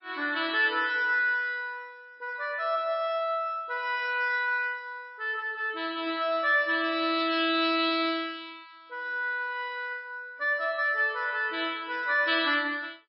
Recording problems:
codec artefacts; MP3, log-spectral distance 2 dB

